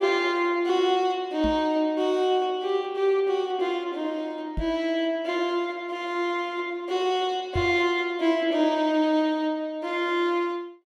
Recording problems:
microphone bump; at 1.5 s, at 4.5 s and at 7.5 s; peak -2 dB vs average level

